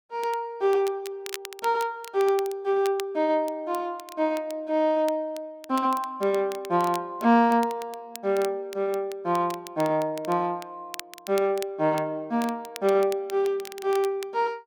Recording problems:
crackling; vinyl, SNR 18 dB

